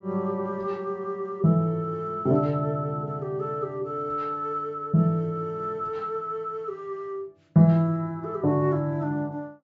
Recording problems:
low-pass filter; nothing above 8 kHz

